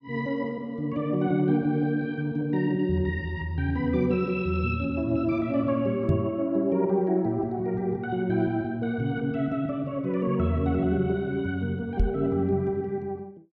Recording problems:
microphone bump; at 6 s and at 12 s; peak +6 dB vs average level

